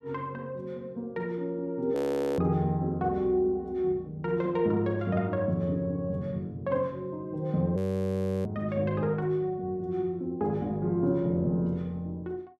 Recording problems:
audio freezing; at 2 s and at 8 s for 0.5 s

